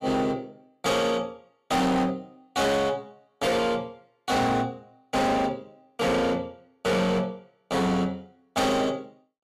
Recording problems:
distorted audio; hard clipping, signal-to-distortion ratio 8 dB

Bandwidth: 14.5 kHz